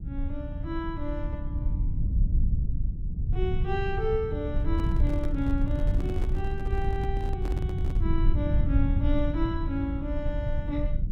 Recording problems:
rumble; below 88 Hz, SNR -4 dB
handling noise; from 4.5 to 8 s; peak -2 dB vs average level

